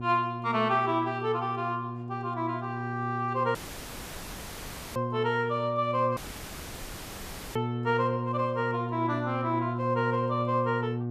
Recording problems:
hum; 60 Hz, harmonics up to 840 Hz, SNR 5 dB
dropout; at 3.5 s for 1.5 s and at 6 s for 1.5 s

